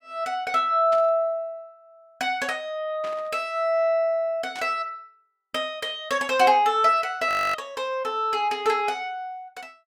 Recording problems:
static burst; at 1 s, at 3 s and at 4.5 s; peak -12 dB vs average level
audio freezing; at 7.5 s

